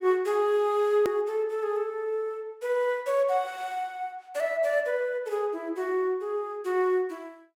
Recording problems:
edit click; at 1 s

